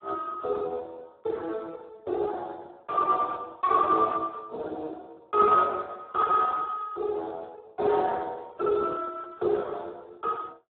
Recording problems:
telephone audio; 320 Hz to 2.5 kHz, Speex

